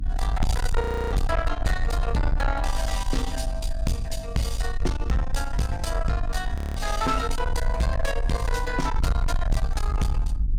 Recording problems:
distortion; soft clipping, signal-to-distortion ratio 7 dB
hum; 50 Hz, harmonics up to 300 Hz, SNR 12 dB
low-frequency rumble; below 60 Hz, SNR 1 dB
audio freezing; at 1 s and at 6.5 s

